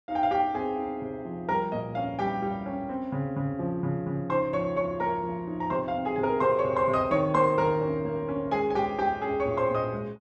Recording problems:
none

